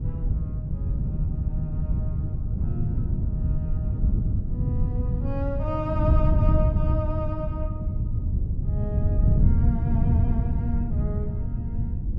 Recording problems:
wind on the microphone; below 120 Hz, SNR -9 dB

